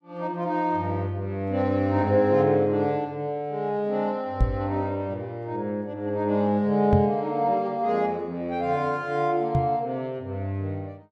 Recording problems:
microphone thump; at 4.5 s, at 7 s and at 9.5 s; peak +7 dB vs average level

